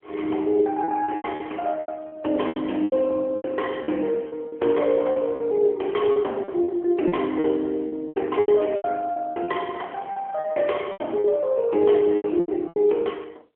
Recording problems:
phone line; 280 Hz to 3.2 kHz, AMR-NB
packet loss; 14% of the sound replaced, filled with repeated pitch periods

